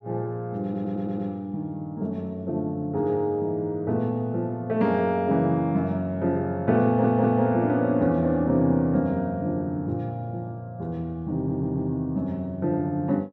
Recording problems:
stutter; at 0.5 s, at 7 s and at 11 s

